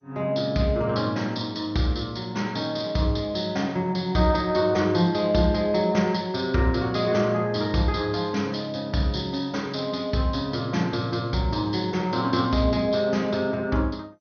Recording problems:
lossy codec; MP2, log-spectral distance 3 dB, nothing above 5.5 kHz

